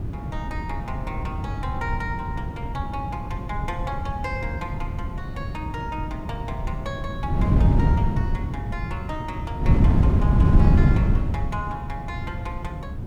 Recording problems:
hiss; slope -3 dB per octave, SNR 30 dB
wind noise; below 160 Hz, SNR -8 dB

